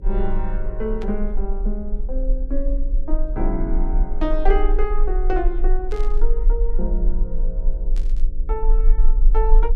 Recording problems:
hum; 60 Hz, harmonics up to 540 Hz, SNR 12 dB
low-frequency rumble; below 34 Hz, strongest tone 18 Hz, SNR -4 dB
burst of static; at 1 s, at 6 s and at 8 s; peak -9 dB vs average level

